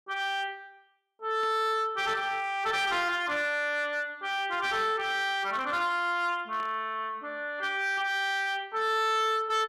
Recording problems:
distortion; hard clipping, signal-to-distortion ratio 12 dB
static burst; at 1.5 s and at 6.5 s; peak -14 dB vs average level

